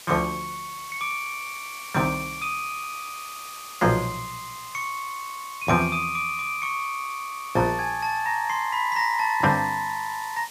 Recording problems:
background hiss; slope +1 dB per octave, SNR 14 dB

